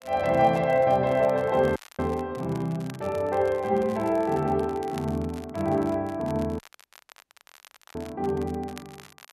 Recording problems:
crackling; vinyl, SNR 24 dB
audio cutting out; at 2 s and at 6.5 s for 1.5 s

